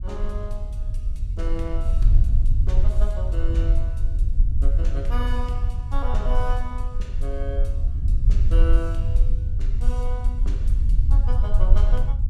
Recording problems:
low-frequency rumble; below 54 Hz, SNR -11 dB

